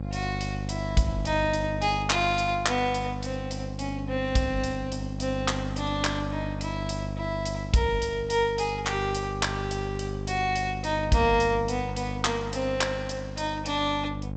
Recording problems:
lossy codec; G.722, log-spectral distance 4 dB, nothing above 8 kHz
mains hum; 50 Hz, harmonics up to 850 Hz, SNR 6 dB

